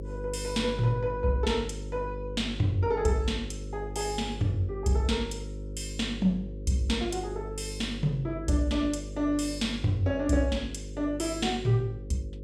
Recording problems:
electrical hum; 50 Hz, harmonics up to 550 Hz, SNR 10 dB

